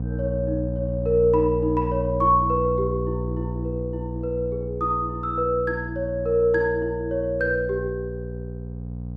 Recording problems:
electrical hum; 60 Hz, harmonics up to 540 Hz, SNR 6 dB

